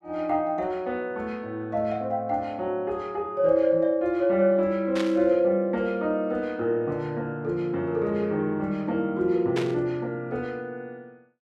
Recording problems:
static burst; at 5 s and at 9.5 s; peak -3 dB vs average level

